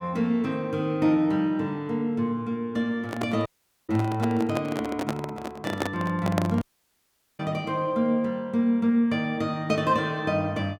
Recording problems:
handling noise; from 3 to 6.5 s; peak +3 dB vs average level
audio cutting out; at 3.5 s and at 6.5 s for 1 s

